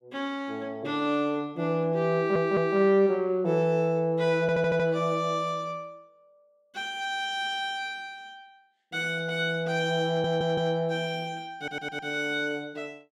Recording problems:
stutter; 4 times, first at 2 s

